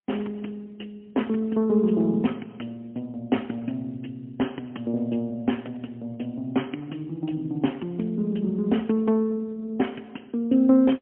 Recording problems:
telephone audio; 190 Hz to 3.2 kHz, AMR-NB, then MP3

